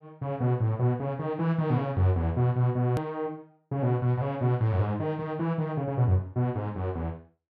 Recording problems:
edit click; at 3 s

